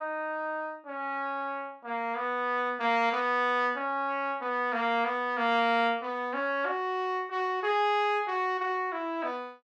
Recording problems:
none

